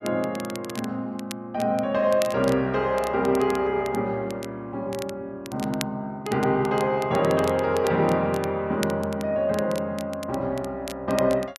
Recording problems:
crackling; vinyl, SNR 17 dB

